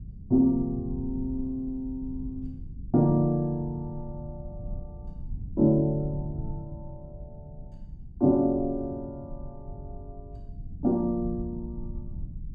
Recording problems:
rumble; below 120 Hz, SNR 14 dB

